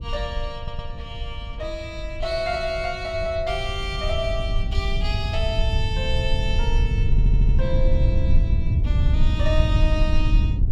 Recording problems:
rumble; below 76 Hz, SNR -2 dB
wind noise; below 92 Hz, SNR -2 dB
stutter; at 0.5 s and at 7 s

